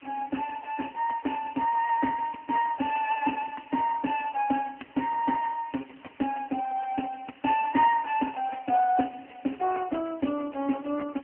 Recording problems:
telephone audio; 220 Hz to 2.8 kHz, AMR-NB
hiss; SNR 27 dB

